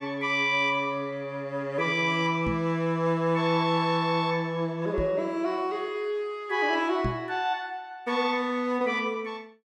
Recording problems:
microphone bump; at 2.5 s, at 5 s and at 7 s; peak 0 dB vs average level

